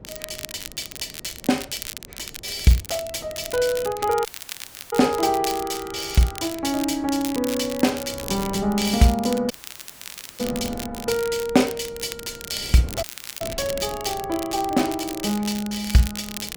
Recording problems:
wind noise; below 410 Hz, SNR 19 dB
crackle; vinyl, SNR 11 dB
audio cutting out; at 4.5 s for 0.5 s, at 9.5 s for 1 s and at 13 s

